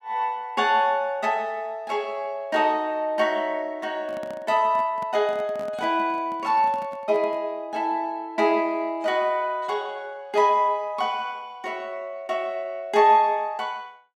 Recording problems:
handling noise; from 4 to 7.5 s; peak -11 dB vs average level

